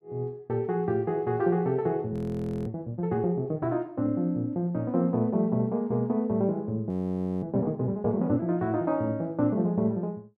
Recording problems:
frozen audio; at 2 s for 0.5 s and at 7 s for 0.5 s

